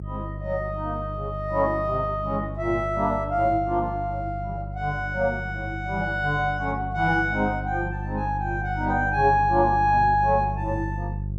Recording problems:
electrical hum; 50 Hz, harmonics up to 350 Hz, SNR 8 dB

